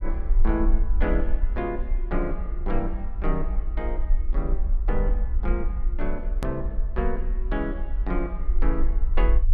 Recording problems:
rumble; below 46 Hz, strongest tone 22 Hz, SNR -4 dB
click at an edit; at 6.5 s

